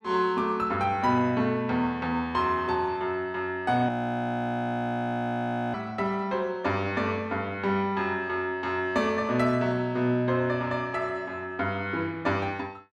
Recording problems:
audio freezing; at 4 s for 2 s

